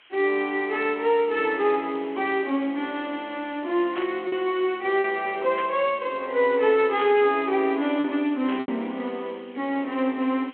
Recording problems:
phone line; 220 Hz to 3.9 kHz, G.726
background hiss; SNR 26 dB
lost packets; 1.9% of the sound replaced, filled with repeated pitch periods
static burst; 4 times, first at 4 s; peak -7 dB vs average level

